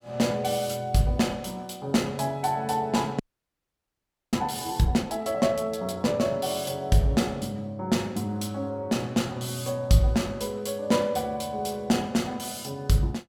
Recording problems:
frozen audio; at 3 s for 1 s

